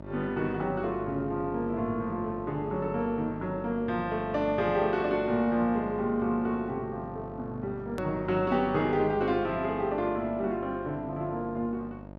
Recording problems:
hum; 50 Hz, harmonics up to 1.5 kHz, SNR 13 dB
edit click; at 8 s

